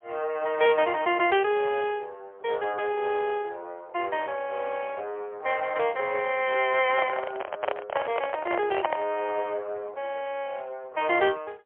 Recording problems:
telephone audio; 320 Hz to 3.3 kHz, AMR-NB, then MP3
handling noise; from 7 to 9 s; peak +2 dB vs average level

